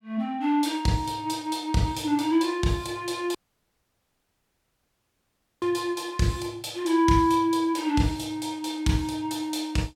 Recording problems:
dropout; at 3.5 s for 2.5 s

